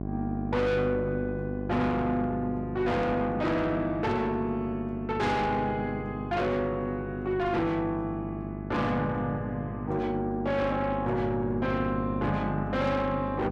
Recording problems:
distorted audio; soft clipping, signal-to-distortion ratio 7 dB
electrical hum; 50 Hz, harmonics up to 1.1 kHz, SNR 7 dB

